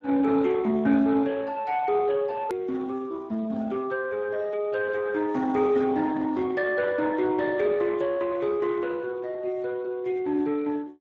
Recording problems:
lossy compression; Speex, log-spectral distance 3 dB, nothing above 13.1 kHz
click at an edit; at 2.5 s

